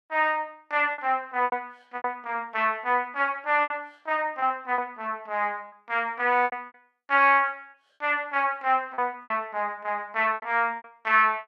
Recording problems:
packet loss; 8% of the sound replaced, filled with repeated pitch periods

